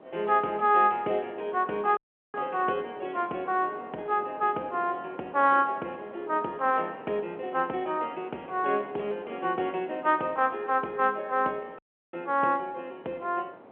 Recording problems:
telephone audio; 260 Hz to 3.3 kHz, G.711
wind on the microphone; below 820 Hz, SNR 19 dB
dropout; at 2 s and at 12 s

